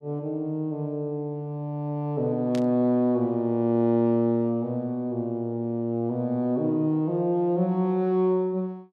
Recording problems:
static burst; at 2.5 s; peak -10 dB vs average level

